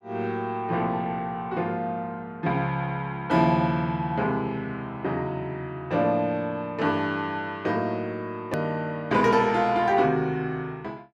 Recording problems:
click at an edit; at 8.5 s

